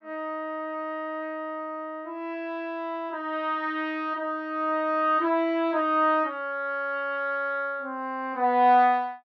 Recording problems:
none

